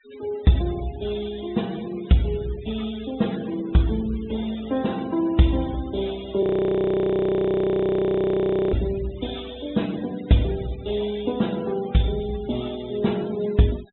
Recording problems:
treble cut off; nothing above 3.9 kHz
denoising artefacts; signal-to-artefact ratio 20 dB
frozen audio; at 6.5 s for 2.5 s

